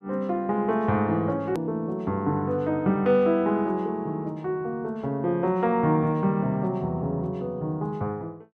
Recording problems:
hard cut with a click; at 1.5 s

